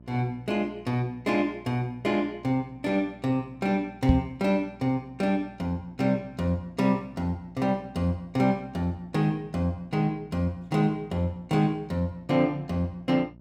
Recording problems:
hum; 60 Hz, harmonics up to 960 Hz, SNR 23 dB
microphone thump; at 4 s; peak +8 dB vs average level

